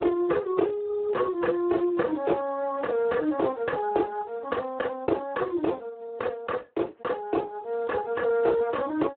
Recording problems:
telephone audio; 280 Hz to 2.4 kHz, Speex

